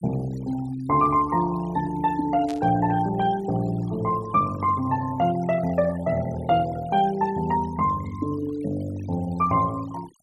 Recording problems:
denoising artefacts; signal-to-artefact ratio 19 dB
static burst; at 2.5 s; peak -11 dB vs average level

